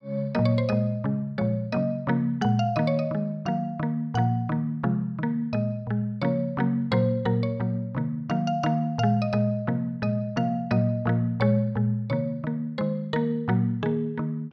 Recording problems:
none

